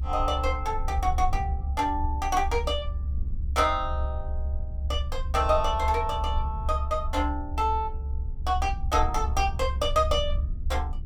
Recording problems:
low-frequency rumble; below 70 Hz, SNR 3 dB

